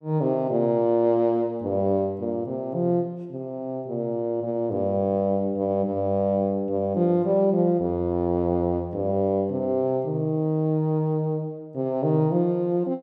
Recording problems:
none

